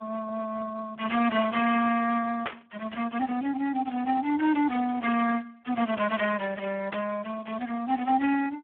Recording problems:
phone line; 220 Hz to 3.4 kHz, Speex
static burst; at 2.5 s and at 7 s; peak -2 dB vs average level

